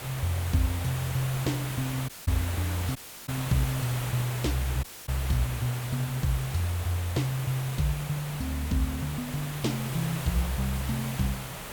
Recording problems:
hiss; slope -3 dB per octave, SNR 7 dB
dropout; at 2 s, at 3 s and at 5 s

